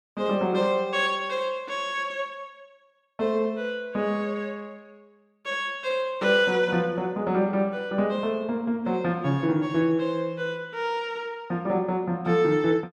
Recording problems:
none

